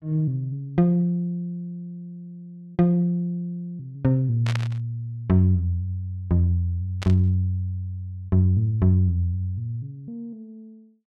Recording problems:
burst of static; at 4.5 s and at 7 s; peak -4 dB vs average level

